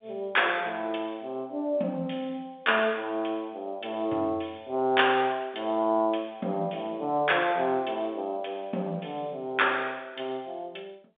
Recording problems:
phone line; 190 Hz to 3.6 kHz, G.711

